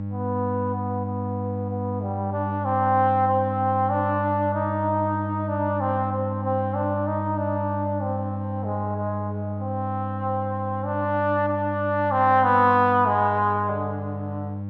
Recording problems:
hum; 50 Hz, harmonics up to 800 Hz, SNR 6 dB

